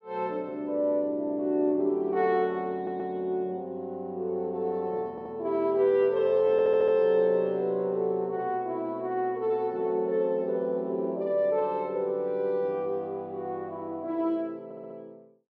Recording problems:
audio stuttering; 4 times, first at 2.5 s

